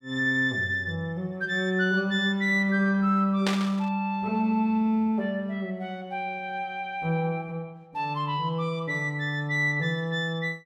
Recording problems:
static burst; at 3.5 s; peak +1 dB vs average level

